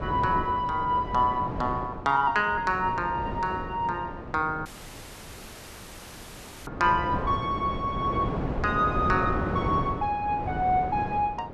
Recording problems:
wind on the microphone; below 540 Hz, SNR 7 dB
dropout; at 4.5 s for 2 s

